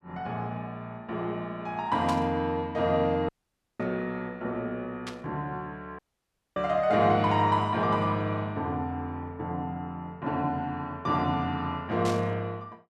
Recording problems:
static burst; 4 times, first at 2 s; peak -5 dB vs average level
dropout; at 3.5 s for 0.5 s and at 6 s for 0.5 s

